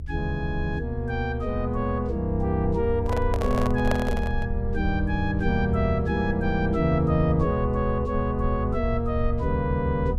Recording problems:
rumble; below 72 Hz, SNR 6 dB
microphone handling noise; from 3 to 4.5 s; peak +2 dB vs average level

